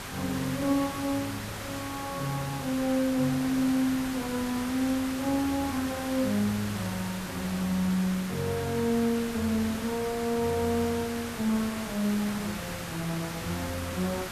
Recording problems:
hiss; slope -3 dB per octave, SNR 7 dB

